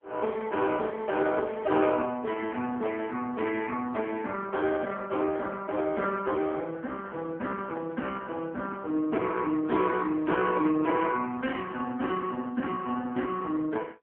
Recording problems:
telephone audio; 190 Hz to 3.2 kHz, AMR-NB

